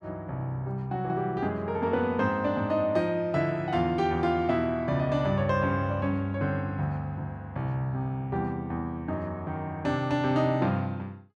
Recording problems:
none

